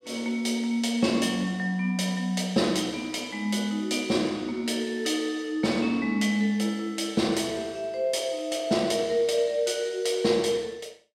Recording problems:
none

